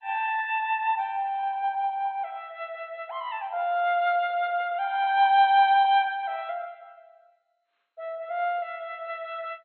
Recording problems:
codec artefacts; MP2, log-spectral distance 2 dB

